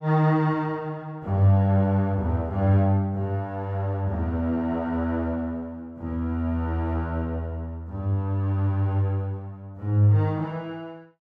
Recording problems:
none

